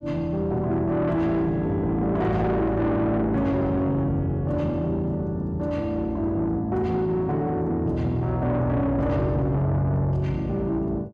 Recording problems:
distortion; soft clipping, signal-to-distortion ratio 10 dB

